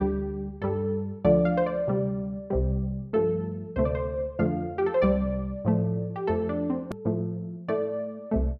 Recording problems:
hard cut with a click; at 7 s

